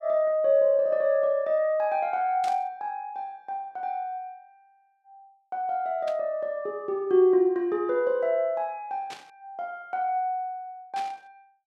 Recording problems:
burst of static; 4 times, first at 2.5 s; peak -10 dB vs average level

